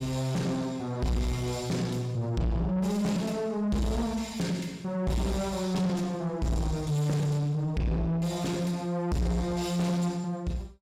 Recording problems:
distortion; soft clipping, signal-to-distortion ratio 8 dB

